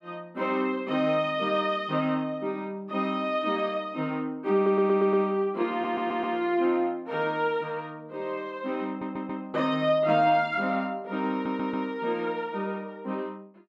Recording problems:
stutter; 4 times, first at 4.5 s

